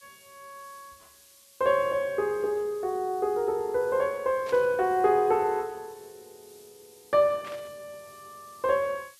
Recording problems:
hiss; slope +5 dB per octave, SNR 27 dB
static burst; at 4.5 s and at 7.5 s; peak -13 dB vs average level

